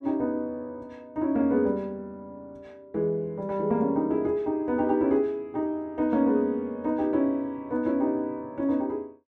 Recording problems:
none

